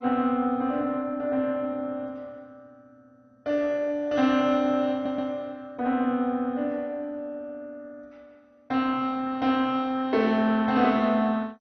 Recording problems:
lossy compression; MP2, log-spectral distance 2 dB, nothing above 5.8 kHz
stutter; at 5 s

